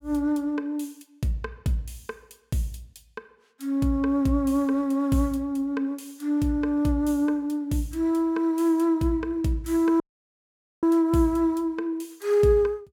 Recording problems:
dropout; at 10 s for 1 s

